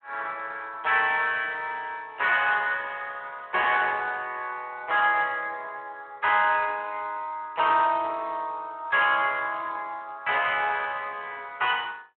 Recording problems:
phone line; 340 Hz to 3.3 kHz, Speex

